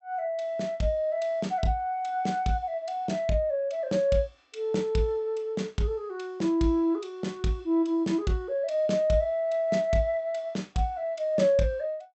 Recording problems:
treble cut off; nothing above 8 kHz

